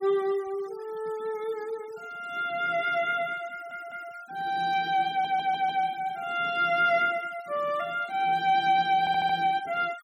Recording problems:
denoising artefacts; signal-to-artefact ratio 24 dB
stutter; at 3.5 s, at 5 s and at 9 s

